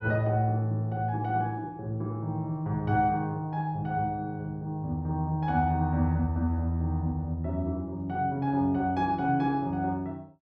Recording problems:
none

